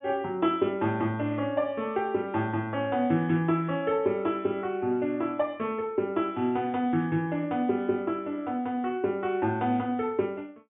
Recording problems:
treble missing; nothing above 3.5 kHz

